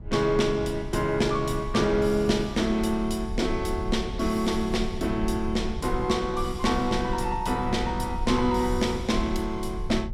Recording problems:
low-frequency rumble; below 78 Hz, SNR 10 dB

